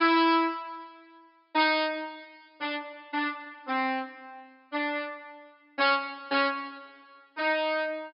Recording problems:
treble cut off; nothing above 5.5 kHz

